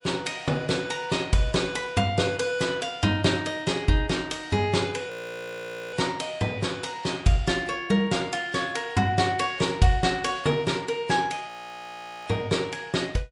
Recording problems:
lossy codec; MP3, log-spectral distance 3 dB
audio freezing; at 5 s for 1 s and at 11 s for 1 s

